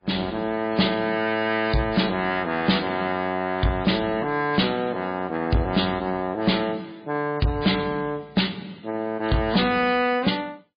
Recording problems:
lossy codec; MP3, log-spectral distance 4 dB, nothing above 4.4 kHz
distortion; soft clipping, signal-to-distortion ratio 10 dB

